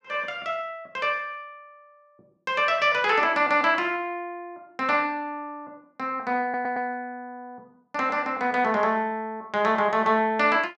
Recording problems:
audio stuttering; at 6.5 s

